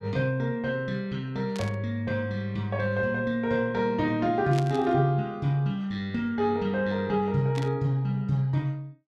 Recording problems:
burst of static; at 1.5 s, at 4.5 s and at 7.5 s; peak -6 dB vs average level

